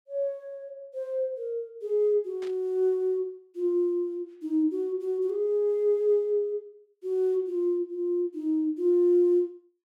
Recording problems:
static burst; at 2.5 s; peak -16 dB vs average level

